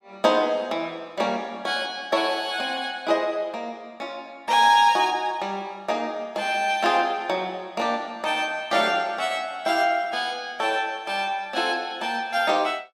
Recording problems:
none

